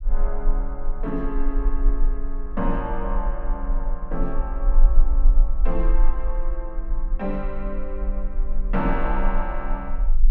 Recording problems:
rumble; below 34 Hz, strongest tone 20 Hz, SNR -4 dB

